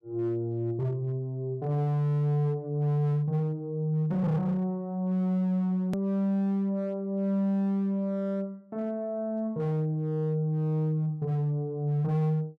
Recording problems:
distorted audio; hard clipping, signal-to-distortion ratio 11 dB
click at an edit; at 6 s

